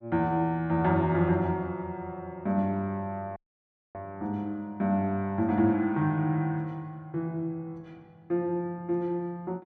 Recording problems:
dropout; at 3.5 s for 0.5 s

